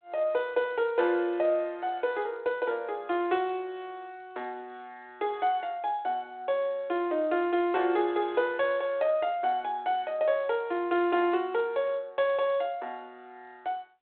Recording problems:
phone line; 280 Hz to 3.7 kHz, G.726

